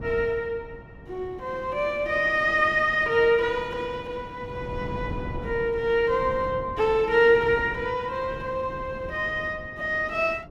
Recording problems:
wind noise; below 290 Hz, SNR 16 dB

